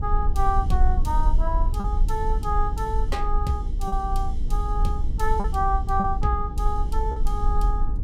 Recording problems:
mains hum; 60 Hz, harmonics up to 480 Hz, SNR 16 dB
rumble; below 52 Hz, SNR -1 dB
packet loss; 3% of the sound replaced, filled with repeated pitch periods

